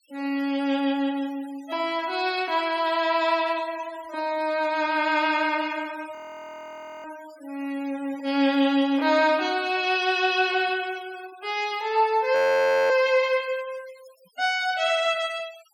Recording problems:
denoising artefacts; signal-to-artefact ratio 22 dB
audio freezing; at 6 s for 1 s and at 12 s for 0.5 s

